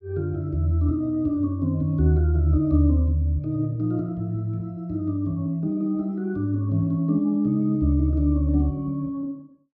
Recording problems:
none

